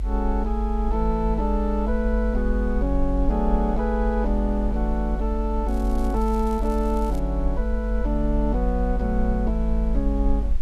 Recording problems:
hiss; slope -4 dB per octave, SNR 24 dB
low-frequency rumble; below 50 Hz, strongest tone 48 Hz, SNR 1 dB
crackle; from 5.5 to 7 s; loose cable, SNR 23 dB

